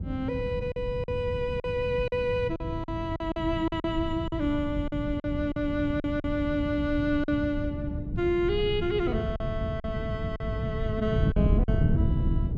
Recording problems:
wind on the microphone; below 160 Hz, SNR 2 dB
lost packets; 7% of the sound replaced, filled with silence

